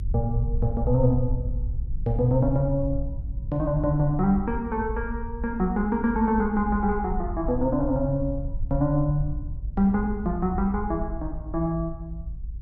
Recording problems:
rumble; below 66 Hz, SNR 7 dB

